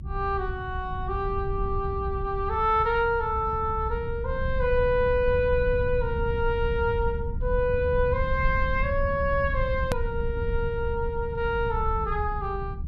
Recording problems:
low-frequency rumble; below 86 Hz, SNR 5 dB
hard cut with a click; at 10 s

